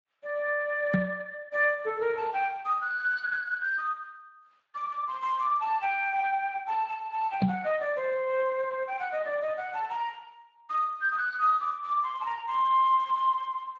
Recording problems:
codec artefacts; Speex, then Speex, log-spectral distance 3 dB
knock on the microphone; at 1 s and at 7.5 s; peak +6 dB vs average level

